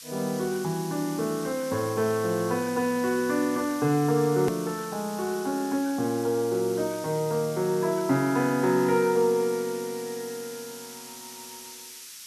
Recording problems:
hiss; SNR 14 dB
hard cut with a click; at 4.5 s

